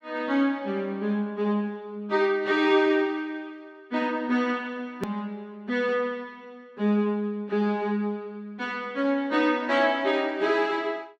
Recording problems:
click at an edit; at 5 s

